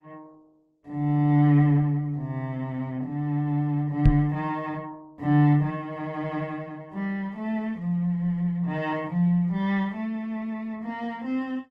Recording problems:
lossy compression; Opus, log-spectral distance 2 dB
microphone thump; at 4 s; peak +8 dB vs average level

